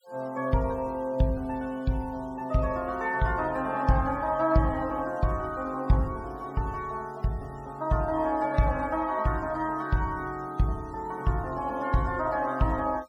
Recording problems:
noise reduction artefacts; signal-to-artefact ratio 27 dB

